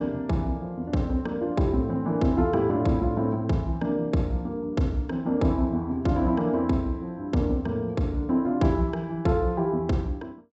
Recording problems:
low-pass filter; nothing above 7.8 kHz

